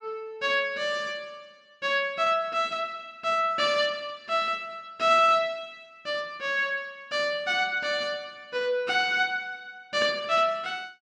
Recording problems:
none

